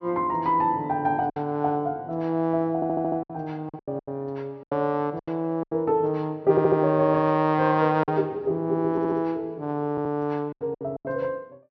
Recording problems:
treble cut off; nothing above 6 kHz
packet loss; 8% of the sound replaced, filled with silence
audio stuttering; 4 times, first at 3 s

